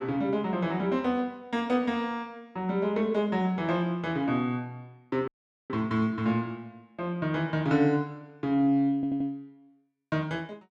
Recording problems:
audio cutting out; at 5.5 s
stutter; at 9 s

